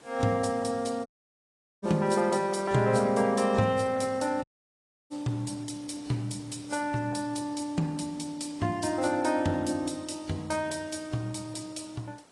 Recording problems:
codec artefacts; AAC, log-spectral distance 5 dB, nothing above 10.1 kHz
background hiss; slope -5 dB per octave, SNR 25 dB
dropout; at 1 s for 1 s and at 4.5 s for 0.5 s

